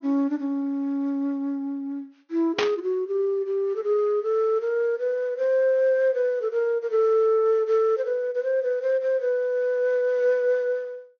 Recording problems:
low-pass filter; nothing above 6.5 kHz
static burst; at 2.5 s; peak +3 dB vs average level

